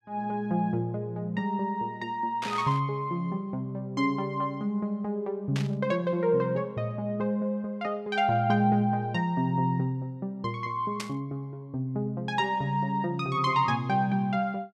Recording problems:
burst of static; at 2.5 s, at 5.5 s and at 11 s; peak -3 dB vs average level

